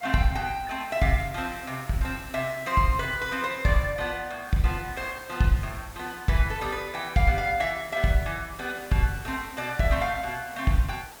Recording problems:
hiss; slope -3 dB per octave, SNR 18 dB

